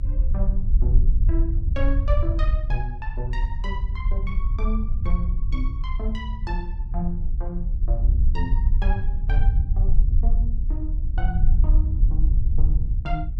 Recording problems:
rumble; below 56 Hz, SNR -10 dB

